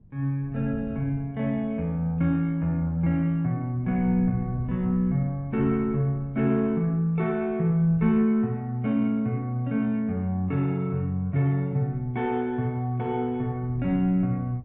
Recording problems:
wind on the microphone; below 160 Hz, SNR 18 dB

